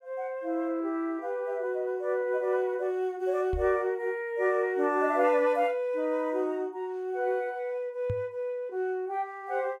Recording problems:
microphone thump; at 3.5 s and at 8 s; peak -1 dB vs average level

